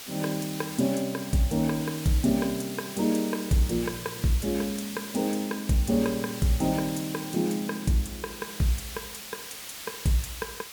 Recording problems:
background hiss; slope +1 dB per octave, SNR 10 dB

